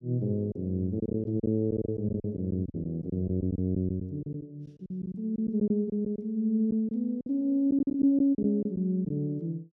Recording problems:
lost packets; 10% of the sound replaced, filled with silence

